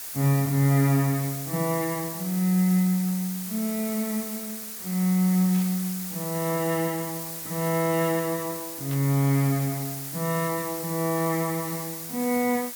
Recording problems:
hiss; slope +1 dB per octave, SNR 7 dB
burst of static; at 5.5 s and at 9 s; peak -14 dB vs average level

